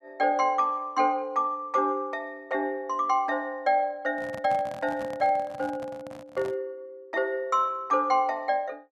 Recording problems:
handling noise; from 4 to 6.5 s; peak -10 dB vs average level

